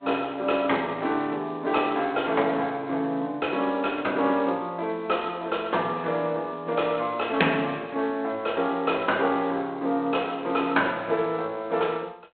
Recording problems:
telephone audio; 280 Hz to 3.6 kHz, G.726

